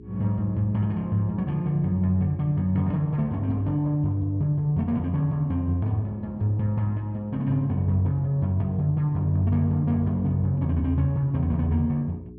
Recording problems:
hum; 60 Hz, harmonics up to 420 Hz, SNR 20 dB

